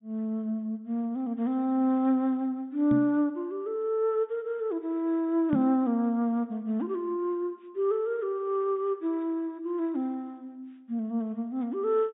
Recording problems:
low-pass filter; nothing above 4 kHz
knock on the microphone; at 3 s and at 5.5 s; peak +2 dB vs average level

